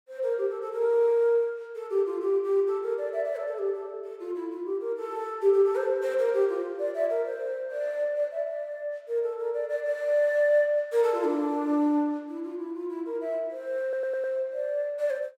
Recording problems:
audio stuttering; at 14 s

